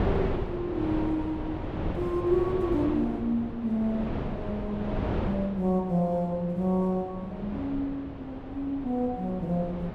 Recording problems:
wind on the microphone; below 520 Hz, SNR 6 dB

